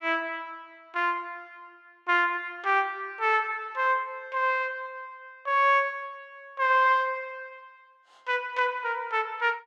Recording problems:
none

